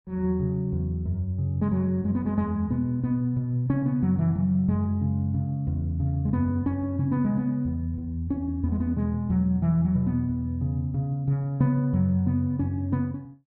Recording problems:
treble cut off; nothing above 5.5 kHz

